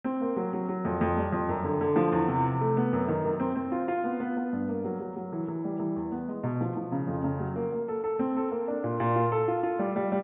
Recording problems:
treble missing; nothing above 4 kHz

